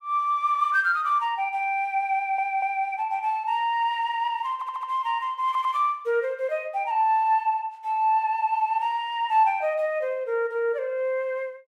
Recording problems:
stutter; at 2 s, at 4.5 s and at 5.5 s

